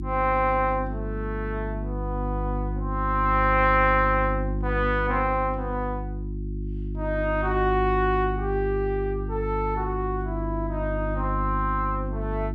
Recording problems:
hum; 50 Hz, harmonics up to 350 Hz, SNR 4 dB

